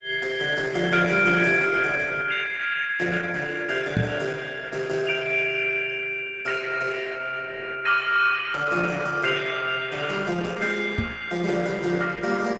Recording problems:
lossy codec; Opus, log-spectral distance 5 dB, nothing above 7.6 kHz
microphone thump; at 4 s and at 11 s; peak +5 dB vs average level

